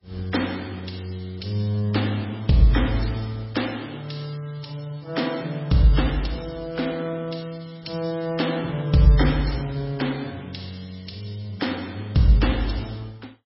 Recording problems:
lossy codec; MP3, log-spectral distance 5 dB, nothing above 5.5 kHz

